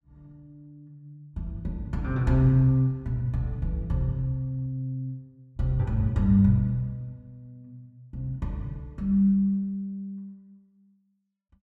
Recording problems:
none

